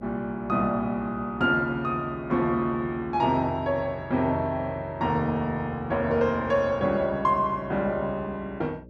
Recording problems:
hum; 60 Hz, harmonics up to 600 Hz, SNR 21 dB

